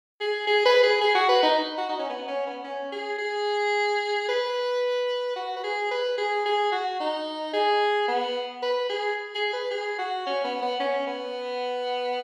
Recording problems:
none

